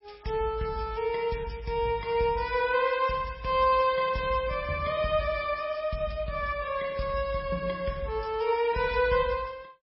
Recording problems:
lossy compression; MP3, log-spectral distance 3 dB, nothing above 5.3 kHz

